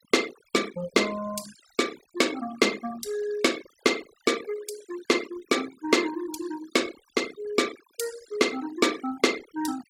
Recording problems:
noise reduction artefacts; signal-to-artefact ratio 15 dB

